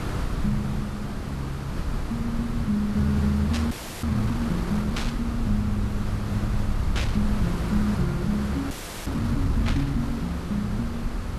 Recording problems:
hiss; SNR 6 dB
rumble; below 100 Hz, SNR 5 dB
static burst; 4 times, first at 3.5 s; peak +1 dB vs average level
audio freezing; at 3.5 s and at 8.5 s

